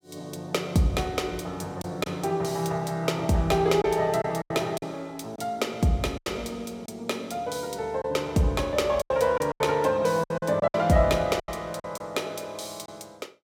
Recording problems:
lost packets; 7% of the sound replaced, filled with silence

